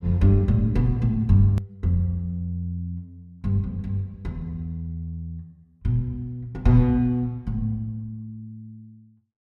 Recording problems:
click at an edit; at 1.5 s

